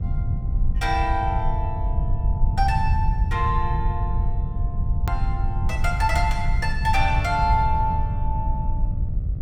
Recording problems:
hum; 60 Hz, harmonics up to 1.4 kHz, SNR 24 dB
rumble; below 90 Hz, SNR -1 dB
click at an edit; at 5 s

